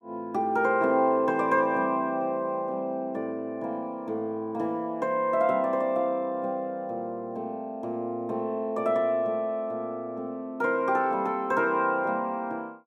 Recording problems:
none

